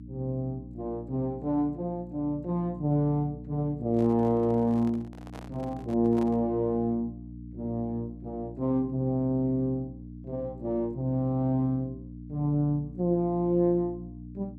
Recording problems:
electrical hum; 60 Hz, harmonics up to 300 Hz, SNR 14 dB
microphone handling noise; from 4 to 6.5 s; peak -10 dB vs average level

